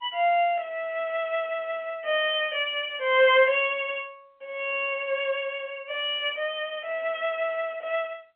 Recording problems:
telephone audio; 260 Hz to 3.3 kHz, G.711

